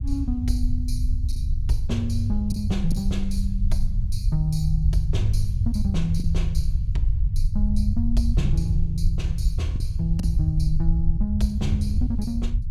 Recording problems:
low-frequency rumble; below 78 Hz, SNR -2 dB
lost packets; 2% of the sound replaced, filled with the last packet

